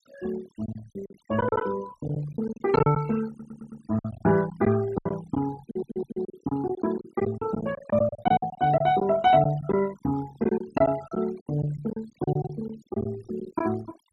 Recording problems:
denoising artefacts; signal-to-artefact ratio 18 dB
lost packets; 12% of the sound replaced, filled with silence
audio stuttering; at 3.5 s and at 5.5 s

